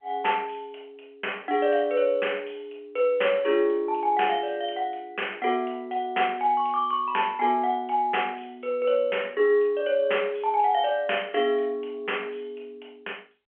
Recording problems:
phone line; 300 Hz to 3.3 kHz, G.711

